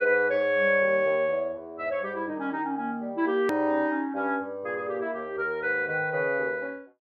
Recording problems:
edit click; at 3.5 s

